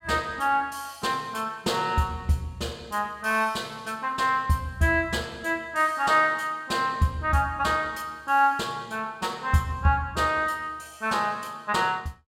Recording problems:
none

